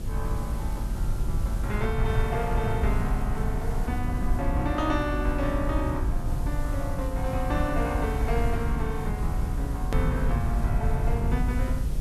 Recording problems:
hum; 50 Hz, harmonics up to 550 Hz, SNR 15 dB
hiss; slope -1 dB per octave, SNR 17 dB
low-frequency rumble; below 88 Hz, SNR -2 dB
edit click; at 10 s

